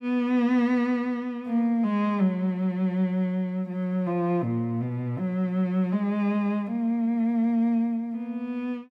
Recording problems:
none

